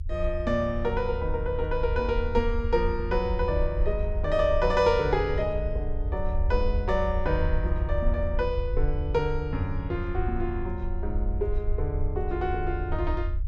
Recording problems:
rumble; below 78 Hz, SNR 3 dB

